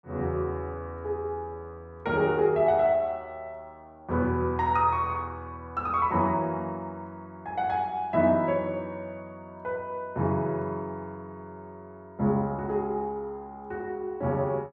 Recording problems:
none

